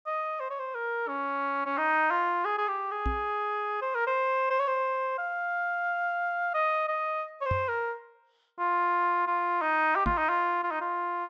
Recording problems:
treble cut off; nothing above 8 kHz
microphone bump; at 3 s, at 7.5 s and at 10 s; peak 0 dB vs average level

